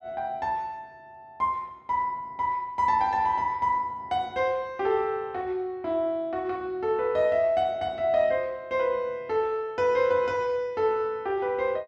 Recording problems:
none

